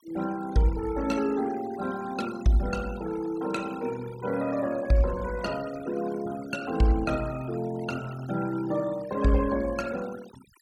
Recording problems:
noise reduction artefacts; signal-to-artefact ratio 16 dB

